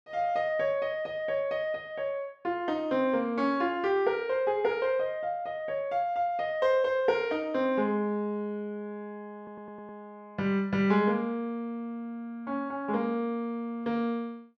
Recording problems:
audio stuttering; at 9.5 s

